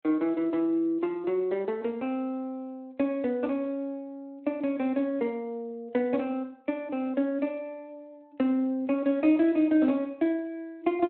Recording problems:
telephone audio; 220 Hz to 3.4 kHz, Speex

